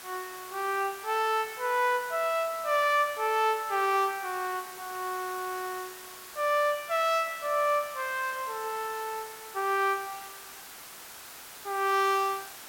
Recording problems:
background hiss; SNR 14 dB

